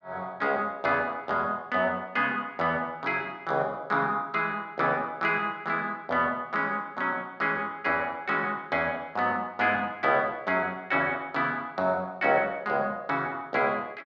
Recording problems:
none

